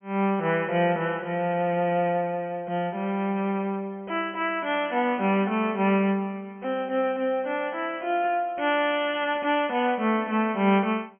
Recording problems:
treble cut off; nothing above 3.2 kHz

